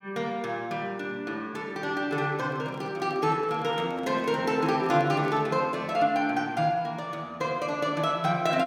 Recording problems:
microphone handling noise; from 2.5 to 5.5 s; peak -10 dB vs average level

